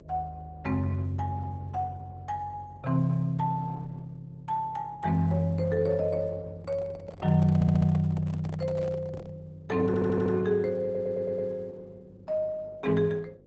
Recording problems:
lossy compression; Opus, log-spectral distance 2 dB, nothing above 7.8 kHz
electrical hum; 50 Hz, harmonics up to 550 Hz, SNR 26 dB
handling noise; from 6.5 to 9.5 s; peak -11 dB vs average level
audio stuttering; at 7.5 s, at 10 s and at 11 s

